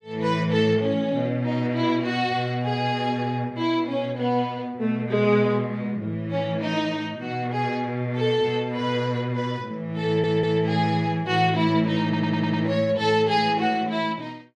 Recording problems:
stutter; at 10 s and at 12 s

